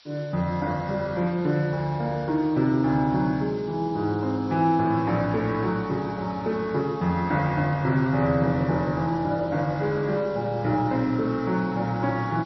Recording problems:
codec artefacts; MP3, then MP3, log-spectral distance 5 dB
hiss; slope +3 dB per octave, SNR 27 dB

